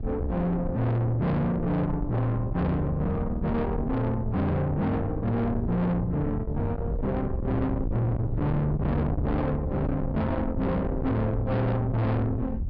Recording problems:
treble cut off; nothing above 5.5 kHz
distorted audio; soft clipping, signal-to-distortion ratio 6 dB
wind on the microphone; below 220 Hz, SNR 5 dB

